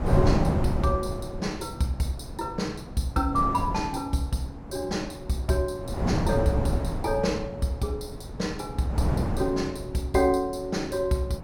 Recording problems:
wind noise; below 310 Hz, SNR 3 dB

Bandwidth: 16.5 kHz